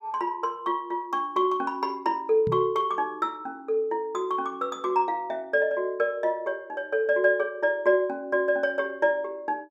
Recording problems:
microphone bump; at 2.5 s; peak -2 dB vs average level

